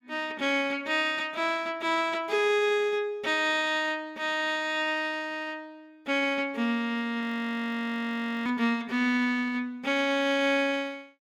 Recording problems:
frozen audio; at 7 s for 1.5 s

